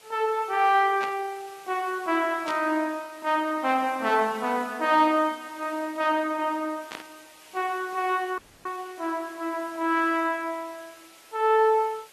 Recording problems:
lossy compression; AAC, log-spectral distance 5 dB
hiss; slope -1 dB per octave, SNR 23 dB
burst of static; at 1 s, at 2.5 s and at 7 s; peak -7 dB vs average level
dropout; at 8.5 s

